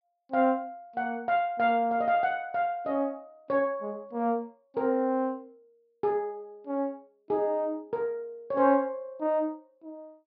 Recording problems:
low-pass filter; nothing above 5.5 kHz

